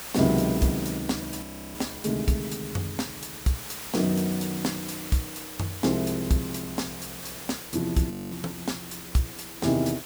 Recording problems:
hum; 60 Hz, harmonics up to 660 Hz, SNR 28 dB
background hiss; slope -1 dB per octave, SNR 9 dB
audio freezing; at 1.5 s and at 8 s

